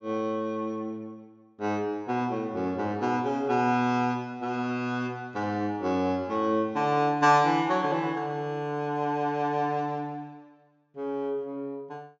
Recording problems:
treble missing; nothing above 8 kHz

